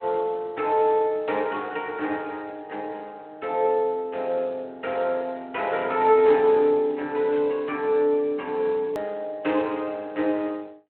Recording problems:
telephone audio; 220 Hz to 3.5 kHz, Speex
click at an edit; at 9 s

